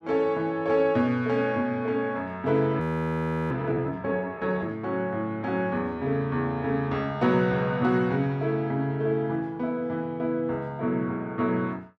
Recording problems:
frozen audio; at 3 s for 0.5 s

